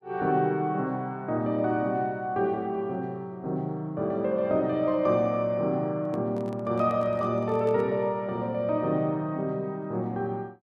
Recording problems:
handling noise; from 6 to 8 s; peak -11 dB vs average level

